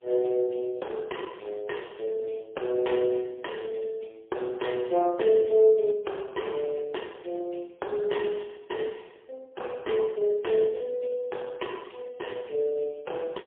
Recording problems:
phone line; 300 Hz to 3.7 kHz, AMR-NB, then MP3

